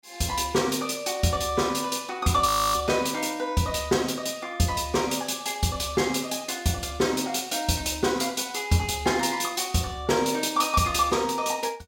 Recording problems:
frozen audio; at 2.5 s

